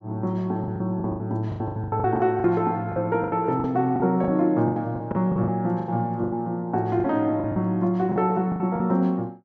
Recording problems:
packet loss; 16% of the sound replaced, filled with the last packet

